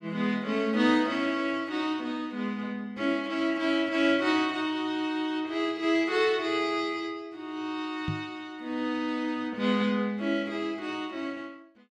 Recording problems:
microphone thump; at 8 s; peak 0 dB vs average level

